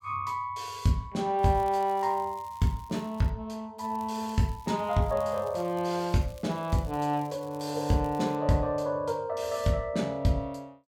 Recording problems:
crackling; from 1.5 to 3.5 s and from 4 to 8.5 s; loose cable, SNR 26 dB

